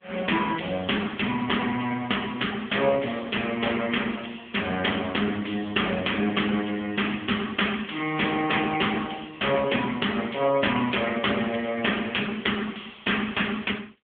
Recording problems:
phone line; 150 Hz to 3.5 kHz, AMR-NB

